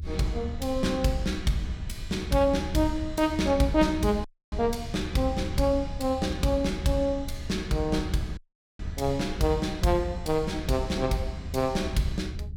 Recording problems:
rumble; below 82 Hz, SNR 10 dB
dropout; at 4.5 s and at 8.5 s

